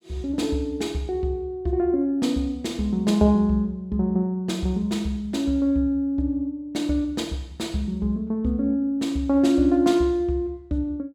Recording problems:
none

